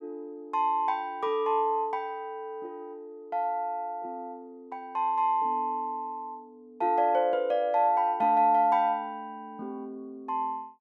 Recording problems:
none

